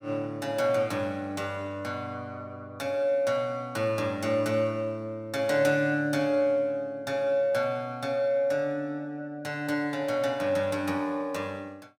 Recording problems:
none

